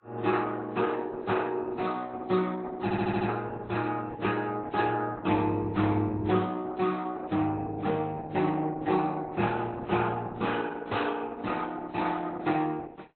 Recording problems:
codec artefacts; Opus, then AAC, log-spectral distance 4 dB, nothing above 4.1 kHz
audio stuttering; at 3 s

